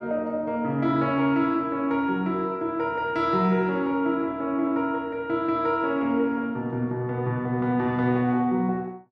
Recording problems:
none

